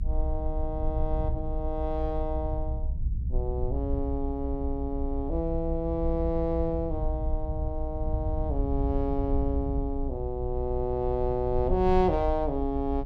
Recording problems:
low-frequency rumble; below 64 Hz, strongest tone 26 Hz, SNR 3 dB

